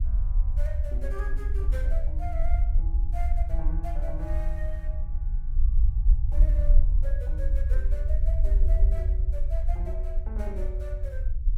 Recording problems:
rumble; below 54 Hz, SNR -14 dB

